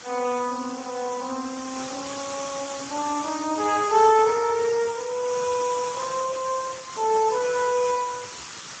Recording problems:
codec artefacts; Vorbis, then Speex, log-spectral distance 14 dB
hiss; SNR 11 dB

